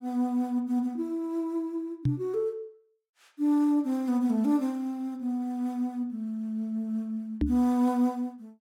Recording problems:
microphone bump; at 2 s and at 7.5 s; peak +5 dB vs average level

